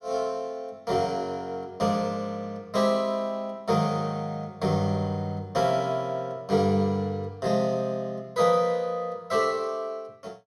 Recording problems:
none

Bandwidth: 15.5 kHz